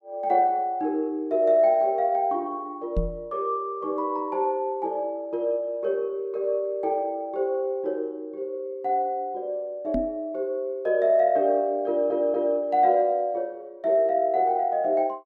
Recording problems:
knock on the microphone; at 3 s and at 10 s; peak +1 dB vs average level
audio stuttering; at 12 s

